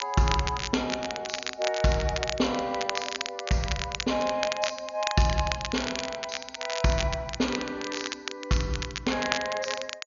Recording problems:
low-pass filter; nothing above 6.8 kHz
crackling; vinyl, SNR 5 dB

